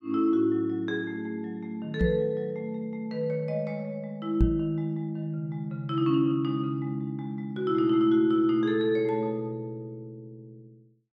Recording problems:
knock on the microphone; at 2 s and at 4.5 s; peak +8 dB vs average level

